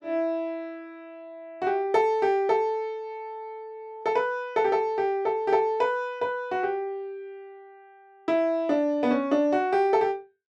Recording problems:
none

